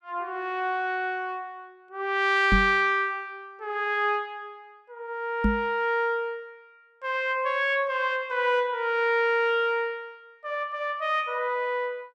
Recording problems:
knock on the microphone; at 2.5 s and at 5.5 s; peak +5 dB vs average level

